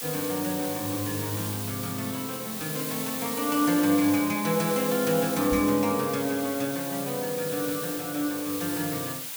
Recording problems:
background hiss; slope +2 dB per octave, SNR 5 dB
knock on the microphone; at 5.5 s; peak -4 dB vs average level

